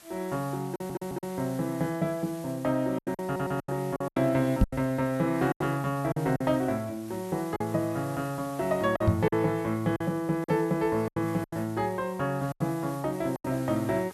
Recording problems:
hiss; slope -1 dB per octave, SNR 20 dB
lost packets; 8% of the sound replaced, filled with silence
stutter; at 0.5 s and at 3.5 s
microphone thump; at 4.5 s and at 9 s; peak +8 dB vs average level

